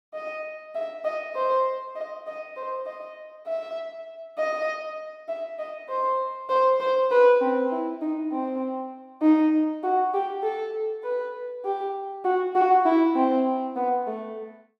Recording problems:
none

